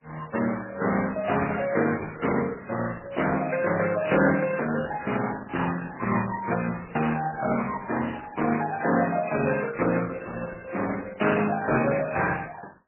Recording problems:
lossy compression; Opus, then MP3, log-spectral distance 6 dB, nothing above 2.7 kHz

